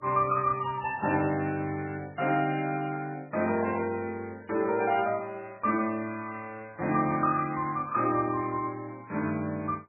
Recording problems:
lossy codec; MP3, log-spectral distance 4 dB, nothing above 2.4 kHz

